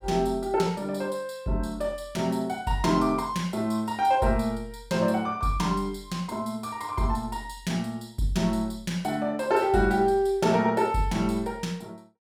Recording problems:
none

